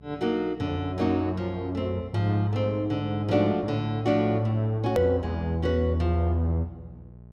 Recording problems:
hum; 60 Hz, harmonics up to 840 Hz, SNR 21 dB
click at an edit; at 5 s

